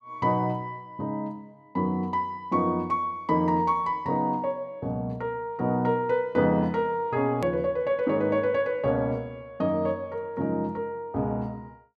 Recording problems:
hard cut with a click; at 7.5 s

